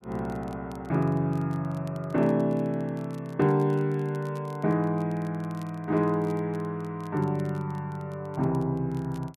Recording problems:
crackling; vinyl, SNR 30 dB

